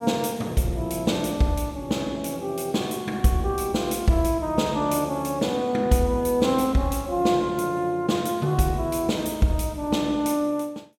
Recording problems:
none

